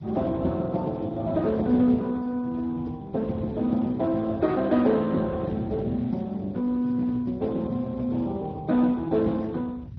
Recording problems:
codec artefacts; Speex, then MP2, log-spectral distance 2 dB, nothing above 5 kHz
low-frequency rumble; below 170 Hz, SNR 15 dB

